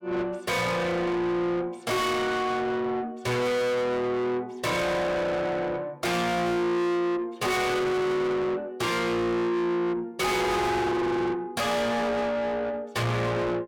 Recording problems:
distorted audio; soft clipping, signal-to-distortion ratio 6 dB

